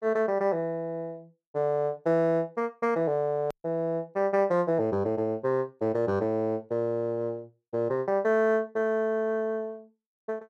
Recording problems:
edit click; at 3.5 s

